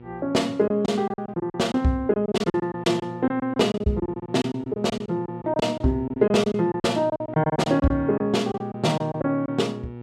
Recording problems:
electrical hum; 60 Hz, harmonics up to 960 Hz, SNR 15 dB
lost packets; 15% of the sound replaced, filled with silence

